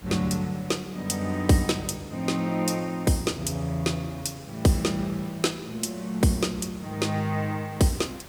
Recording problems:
background hiss; slope -4 dB per octave, SNR 21 dB

